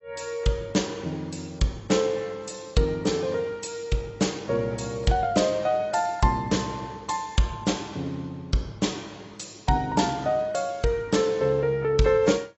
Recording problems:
lossy codec; AAC, log-spectral distance 5 dB, nothing above 7.8 kHz

